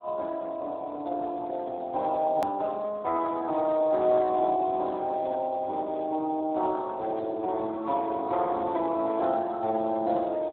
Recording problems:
telephone audio; 280 Hz to 2 kHz, Speex
edit click; at 2.5 s

